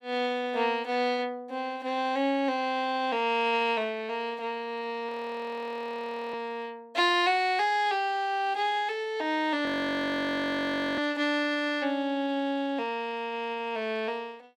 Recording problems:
frozen audio; at 5 s for 1 s and at 9.5 s for 1.5 s

